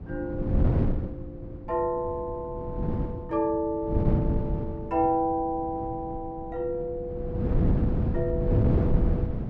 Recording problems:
wind on the microphone; below 210 Hz, SNR -3 dB

